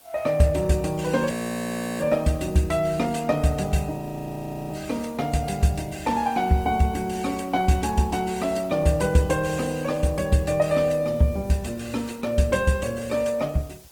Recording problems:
lossy codec; Opus, log-spectral distance 4 dB, nothing above 18.9 kHz
background hiss; SNR 26 dB
frozen audio; at 1.5 s for 0.5 s and at 4 s for 0.5 s

